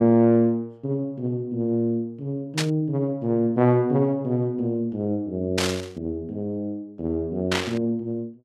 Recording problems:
burst of static; at 2.5 s, at 5.5 s and at 7.5 s; peak +3 dB vs average level

